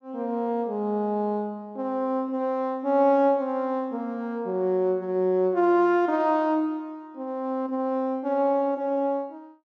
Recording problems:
none

